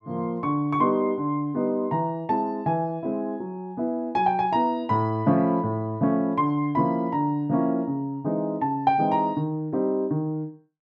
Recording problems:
none

